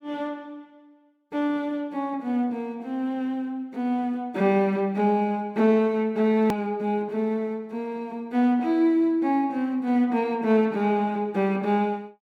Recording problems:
click at an edit; at 6.5 s

